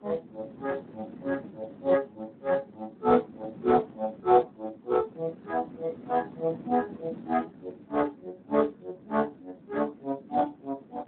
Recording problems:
phone line; 170 Hz to 2.2 kHz, Speex
wind noise; below 370 Hz, SNR 17 dB

